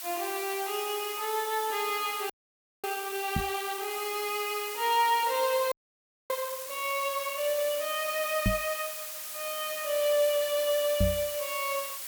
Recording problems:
hiss; slope +3 dB per octave, SNR 7 dB
audio freezing; at 2.5 s for 0.5 s and at 5.5 s for 0.5 s
microphone bump; at 3.5 s, at 8.5 s and at 11 s; peak +6 dB vs average level

